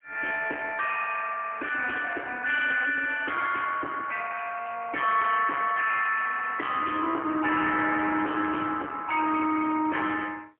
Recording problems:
telephone audio; 260 Hz to 3 kHz, AMR-NB, then MP3
distorted audio; soft clipping, signal-to-distortion ratio 11 dB

